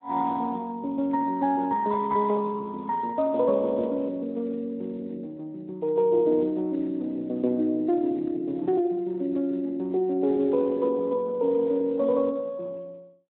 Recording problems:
phone line; 240 Hz to 2 kHz, Speex

